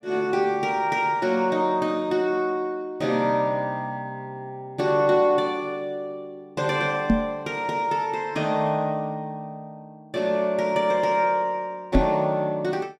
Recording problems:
microphone bump; at 7 s and at 12 s; peak +8 dB vs average level

